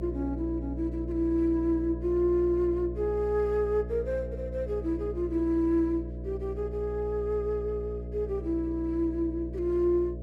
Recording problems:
hum; 60 Hz, harmonics up to 660 Hz, SNR 8 dB

